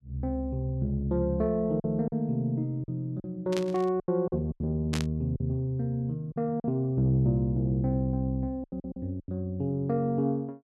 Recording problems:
lost packets; 7% of the sound replaced, filled with silence
static burst; at 3.5 s and at 5 s; peak -2 dB vs average level

